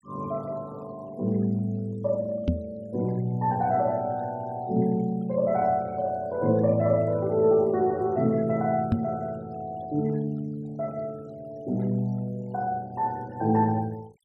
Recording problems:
noise reduction artefacts; signal-to-artefact ratio 28 dB
microphone bump; at 2.5 s and at 9 s; peak +6 dB vs average level

